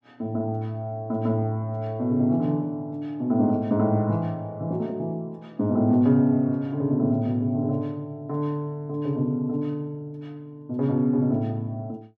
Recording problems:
none

